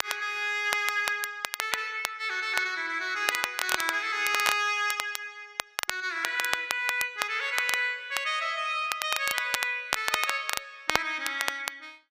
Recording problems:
crackle; vinyl, SNR 4 dB

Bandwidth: 15 kHz